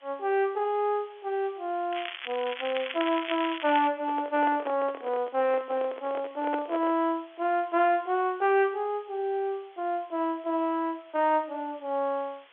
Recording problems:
telephone audio; 300 Hz to 3.5 kHz, G.711
background hiss; SNR 27 dB
crackle; from 2 to 4 s; loose cable, SNR 8 dB
handling noise; from 4 to 7 s; peak -3 dB vs average level

